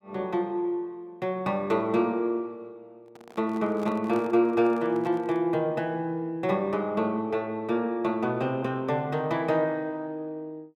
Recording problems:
microphone handling noise; from 3 to 5.5 s; peak -10 dB vs average level

